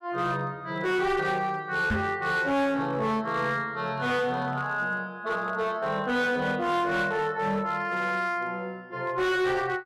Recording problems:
distorted audio; hard clipping, signal-to-distortion ratio 10 dB
microphone bump; at 2 s; peak +3 dB vs average level

